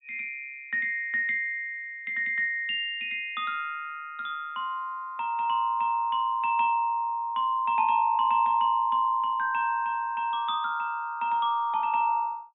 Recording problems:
treble missing; nothing above 4 kHz

